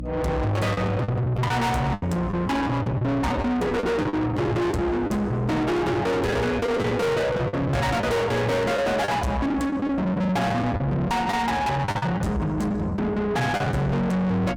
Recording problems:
distortion; soft clipping, signal-to-distortion ratio 6 dB
hum; 60 Hz, harmonics up to 900 Hz, SNR 13 dB
packet loss; 9% of the sound replaced, filled with the last packet

